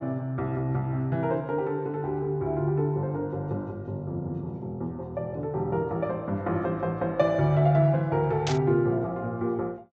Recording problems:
low-pass filter; nothing above 8 kHz
burst of static; at 8.5 s; peak 0 dB vs average level

